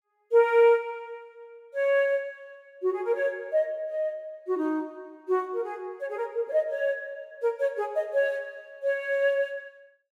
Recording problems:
none

